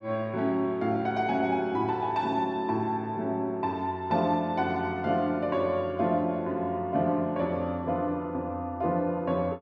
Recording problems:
none

